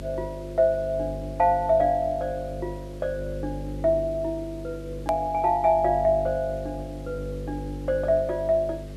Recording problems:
mains hum; 50 Hz, harmonics up to 550 Hz, SNR 11 dB
background hiss; slope -2 dB per octave, SNR 27 dB
click at an edit; at 5 s

